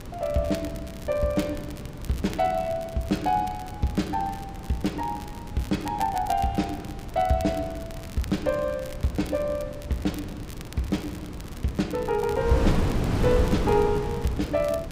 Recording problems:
wind on the microphone; below 300 Hz, SNR 6 dB
crackle; vinyl, SNR 19 dB

